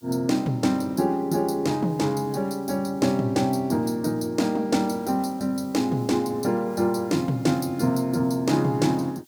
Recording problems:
hiss; SNR 30 dB

